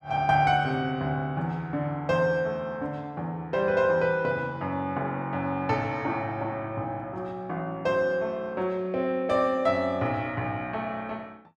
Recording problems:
none

